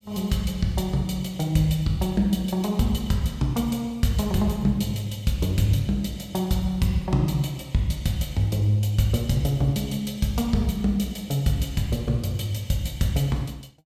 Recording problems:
none

